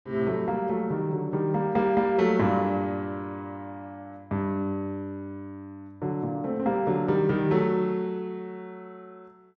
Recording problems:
none

